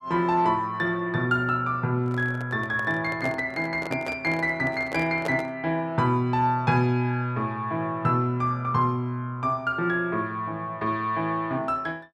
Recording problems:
microphone handling noise; from 2 to 5.5 s; peak -2 dB vs average level

